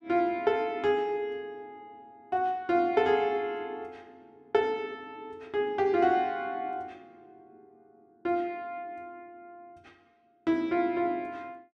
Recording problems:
none

